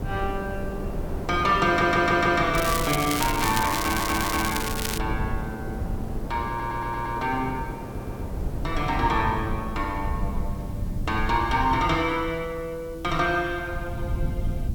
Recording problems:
background hiss; slope 0 dB per octave, SNR 27 dB
low-frequency rumble; below 120 Hz, SNR 9 dB
wind noise; below 490 Hz, SNR 10 dB
stutter; 4 times, first at 1.5 s
crackling; from 2.5 to 5 s; loose cable, SNR 4 dB

